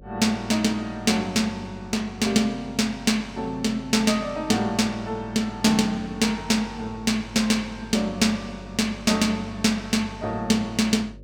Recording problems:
hum; 50 Hz, harmonics up to 600 Hz, SNR 21 dB

